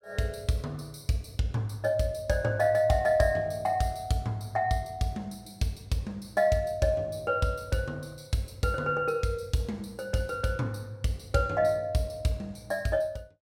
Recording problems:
none

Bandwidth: 16.5 kHz